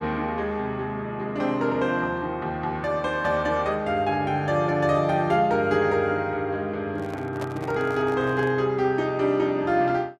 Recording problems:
handling noise; from 7 to 8.5 s; peak -6 dB vs average level

